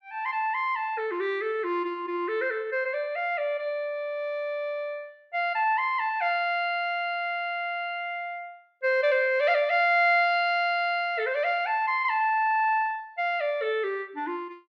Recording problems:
none

